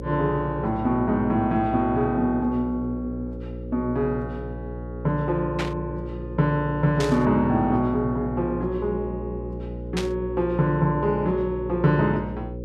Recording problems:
hum; 60 Hz, harmonics up to 540 Hz, SNR 10 dB
static burst; at 5.5 s, at 7 s and at 10 s; peak -2 dB vs average level

